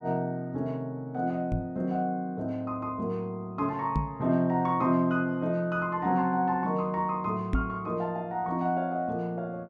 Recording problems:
knock on the microphone; at 1.5 s, at 4 s and at 7.5 s; peak +5 dB vs average level

